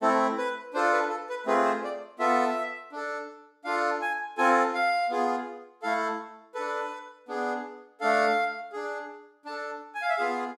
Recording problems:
none

